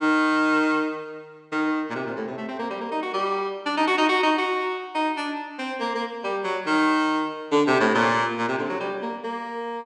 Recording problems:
none

